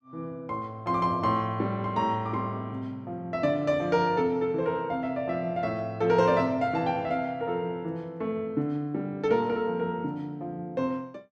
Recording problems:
none

